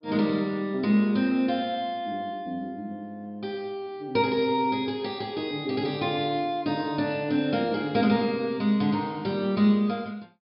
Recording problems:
low-pass filter; nothing above 5.5 kHz

